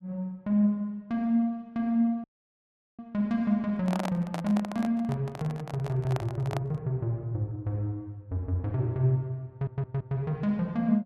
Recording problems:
audio cutting out; at 2 s for 1 s
handling noise; from 3.5 to 7 s; peak -1 dB vs average level
audio stuttering; at 9.5 s

